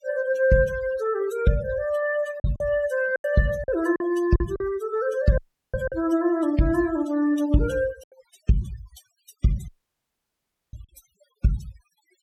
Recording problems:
noise reduction artefacts; signal-to-artefact ratio 18 dB
lost packets; 5% of the sound replaced, filled with silence
audio cutting out; at 5.5 s and at 9.5 s for 1 s

